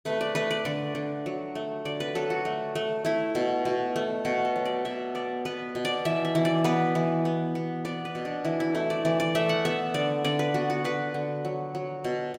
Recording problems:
none

